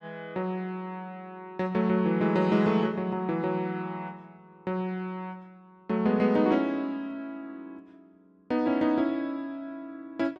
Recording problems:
none

